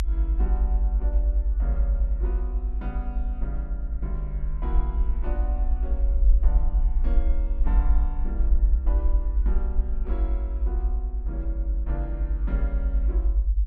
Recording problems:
rumble; below 56 Hz, strongest tone 46 Hz, SNR -13 dB

